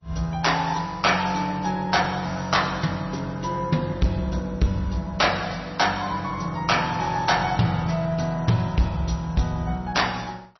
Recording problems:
lossy codec; MP3, log-spectral distance 5 dB, nothing above 5.8 kHz
distorted audio; hard clipping, uneven, signal-to-distortion ratio 12 dB

